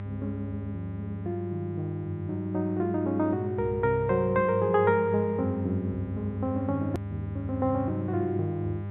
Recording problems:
treble missing; nothing above 3.9 kHz
hum; 50 Hz, harmonics up to 1.2 kHz, SNR 7 dB
edit click; at 7 s

